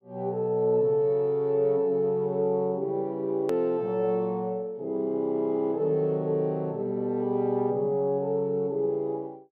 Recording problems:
hard cut with a click; at 3.5 s

